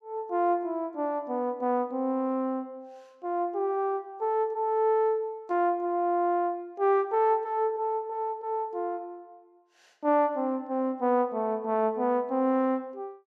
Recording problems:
none

